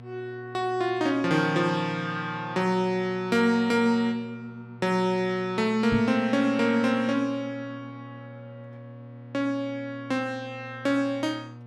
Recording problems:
hum; 60 Hz, harmonics up to 1.3 kHz, SNR 18 dB
microphone bump; at 6 s; peak -1 dB vs average level

